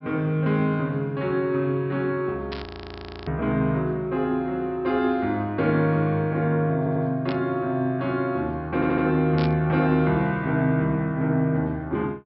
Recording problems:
low-pass filter; nothing above 5.4 kHz
burst of static; at 2.5 s, at 7.5 s and at 9.5 s; peak -7 dB vs average level
frozen audio; at 2.5 s for 0.5 s
audio stuttering; at 7 s and at 8.5 s

